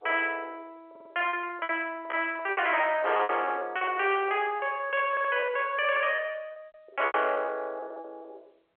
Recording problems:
telephone audio; 340 Hz to 3.3 kHz, G.711
distortion; soft clipping, signal-to-distortion ratio 12 dB
packet loss; 12% of the sound replaced, filled with repeated pitch periods
stutter; at 1 s and at 5 s

